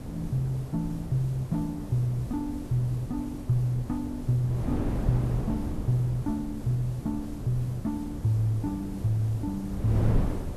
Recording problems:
background hiss; slope -2 dB per octave, SNR 25 dB
wind on the microphone; below 240 Hz, SNR 6 dB

